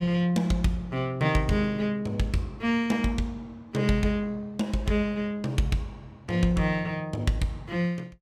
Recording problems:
none

